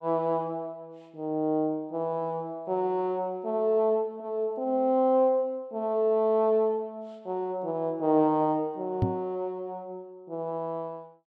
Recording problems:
microphone bump; at 9 s; peak +5 dB vs average level

